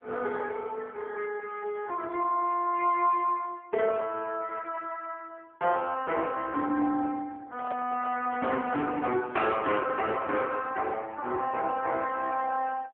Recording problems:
phone line; 320 Hz to 3.5 kHz, AMR-NB
microphone handling noise; from 7.5 to 9 s; peak -6 dB vs average level

